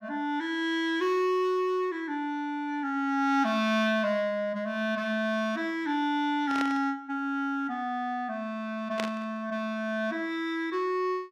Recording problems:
static burst; at 6.5 s and at 9 s; peak 0 dB vs average level

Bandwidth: 15 kHz